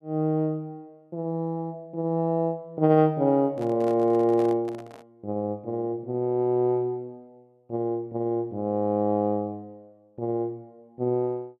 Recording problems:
microphone handling noise; from 3.5 to 5 s; peak -11 dB vs average level

